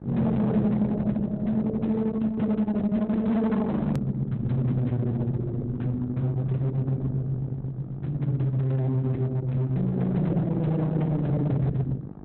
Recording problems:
lossy compression; Opus, log-spectral distance 2 dB, nothing above 13.1 kHz
distortion; hard clipping, signal-to-distortion ratio 10 dB
electrical hum; 50 Hz, harmonics up to 1.3 kHz, SNR 15 dB
edit click; at 4 s

